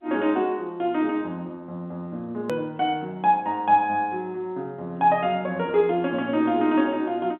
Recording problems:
phone line; 130 Hz to 3.5 kHz, G.711
click at an edit; at 2.5 s

